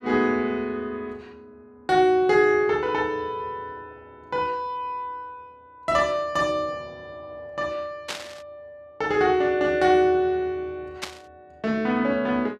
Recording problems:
static burst; at 8 s and at 11 s; peak -2 dB vs average level

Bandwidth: 13.5 kHz